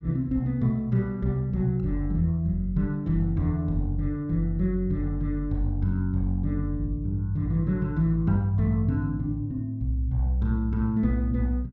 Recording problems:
none

